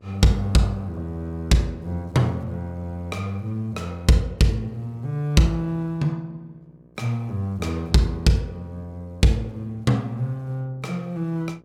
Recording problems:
hum; 60 Hz, harmonics up to 1.2 kHz, SNR 31 dB

